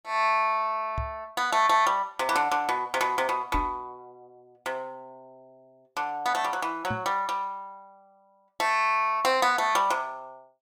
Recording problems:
knock on the microphone; at 1 s, at 3.5 s and at 7 s; peak -3 dB vs average level

